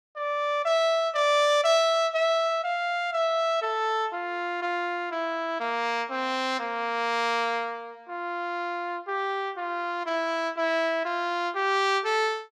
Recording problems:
none

